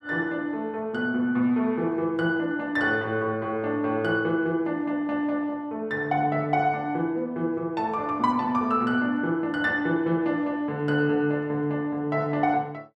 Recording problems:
none

